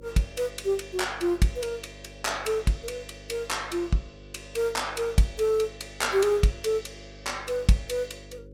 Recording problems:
hum; 50 Hz, harmonics up to 550 Hz, SNR 20 dB

